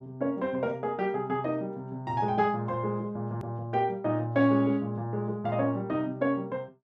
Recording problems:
hard cut with a click; at 3.5 s

